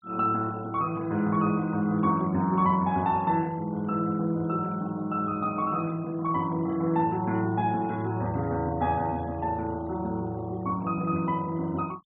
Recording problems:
low-pass filter; nothing above 4 kHz
denoising artefacts; signal-to-artefact ratio 27 dB

